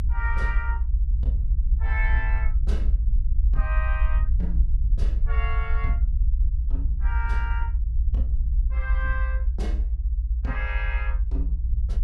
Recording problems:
low-frequency rumble; below 58 Hz, SNR -10 dB

